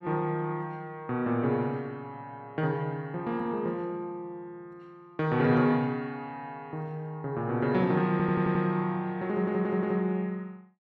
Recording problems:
stutter; at 8 s and at 9.5 s

